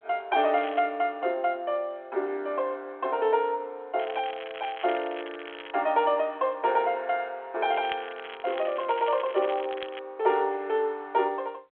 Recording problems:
phone line; 300 Hz to 3.6 kHz, G.726
crackling; at 0.5 s, from 4 to 5.5 s and from 7.5 to 10 s; loose cable, SNR 15 dB

